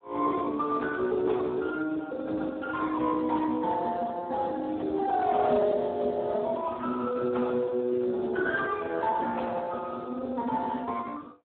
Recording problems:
phone line; 240 Hz to 2.1 kHz, Speex

